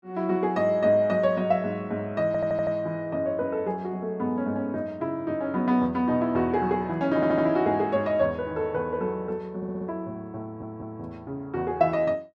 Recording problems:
stutter; 4 times, first at 2.5 s

